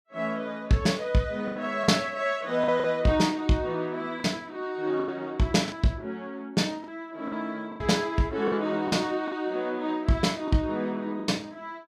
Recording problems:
packet loss; 6% of the sound replaced, filled with the last packet

